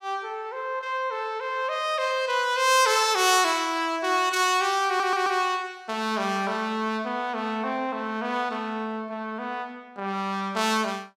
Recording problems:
audio stuttering; at 5 s

